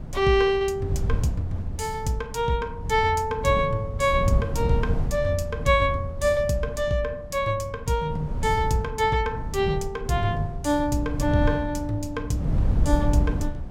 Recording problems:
wind noise; below 130 Hz, SNR 5 dB

